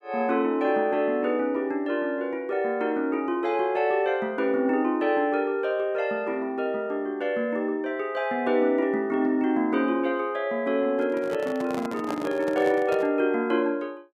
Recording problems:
handling noise; from 11 to 13 s; peak -4 dB vs average level

